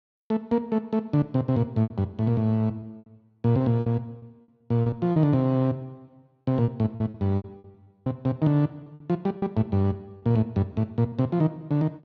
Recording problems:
packet loss; 10% of the sound replaced, filled with repeated pitch periods

